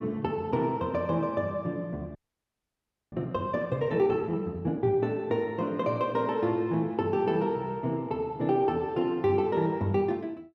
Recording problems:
audio freezing; at 2 s for 1 s

